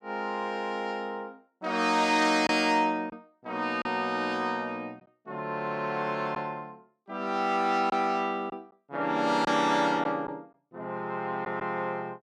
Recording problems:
lost packets; 1.7% of the sound replaced, filled with silence

